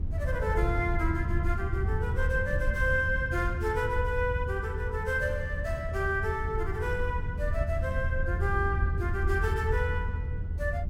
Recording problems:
low-frequency rumble; below 86 Hz, SNR 1 dB

